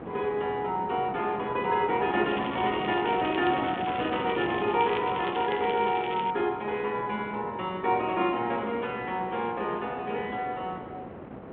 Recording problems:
telephone audio; 260 Hz to 3.5 kHz, G.726
wind on the microphone; below 700 Hz, SNR 12 dB
crackle; from 2 to 6.5 s; loose cable, SNR 12 dB

